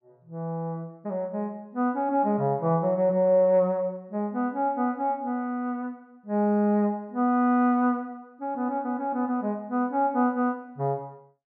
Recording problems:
none

